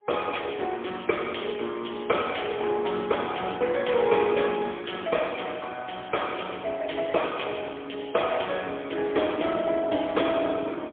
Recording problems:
telephone audio; 240 Hz to 3.5 kHz, AMR-NB, then MP3

